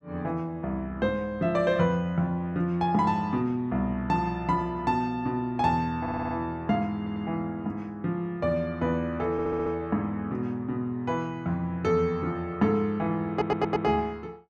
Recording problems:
audio stuttering; 4 times, first at 6 s

